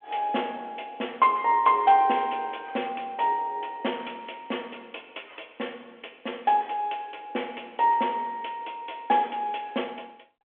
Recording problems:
telephone audio; 320 Hz to 3.4 kHz, G.726

